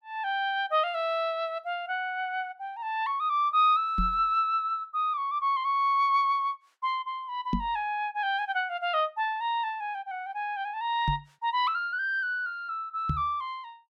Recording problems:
knock on the microphone; 4 times, first at 4 s; peak +3 dB vs average level

